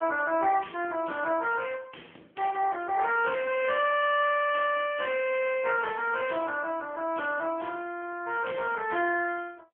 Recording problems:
phone line; 240 Hz to 3.3 kHz, AMR-NB

